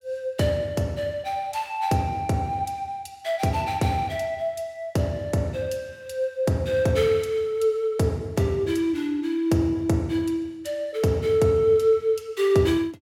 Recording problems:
none

